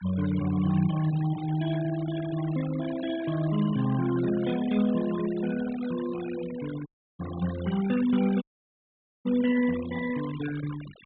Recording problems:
treble missing; nothing above 4 kHz
noise reduction artefacts; signal-to-artefact ratio 15 dB
dropout; at 7 s and at 8.5 s for 1 s

